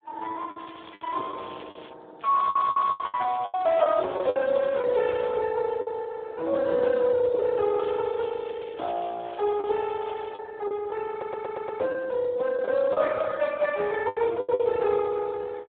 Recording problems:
phone line; 340 Hz to 3.7 kHz, Speex
packet loss; 7% of the sound replaced, filled with the last packet
crackle; from 0.5 to 2 s, from 2 to 5.5 s and from 8 to 10 s; loose cable, SNR 23 dB
stutter; at 2.5 s and at 11 s

